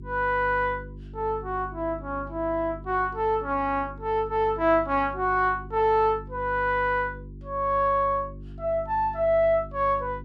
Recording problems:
hum; 50 Hz, harmonics up to 400 Hz, SNR 16 dB

